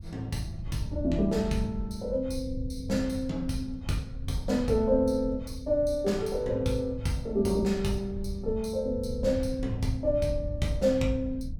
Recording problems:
wind on the microphone; below 100 Hz, SNR 9 dB

